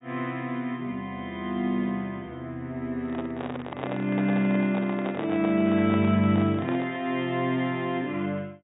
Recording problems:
treble missing; nothing above 4 kHz
microphone handling noise; from 3 to 7 s; peak -3 dB vs average level

